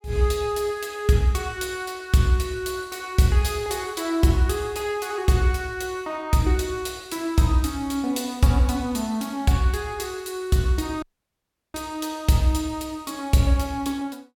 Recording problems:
audio cutting out; at 11 s for 0.5 s

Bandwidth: 17.5 kHz